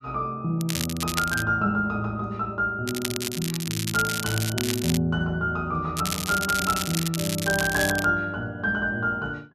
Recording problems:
crackling; at 0.5 s, from 3 to 5 s and from 6 to 8 s; loose cable, SNR 4 dB

